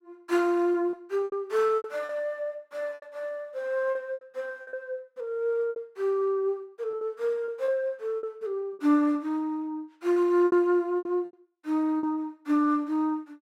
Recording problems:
lost packets; 10% of the sound replaced, filled with repeated pitch periods

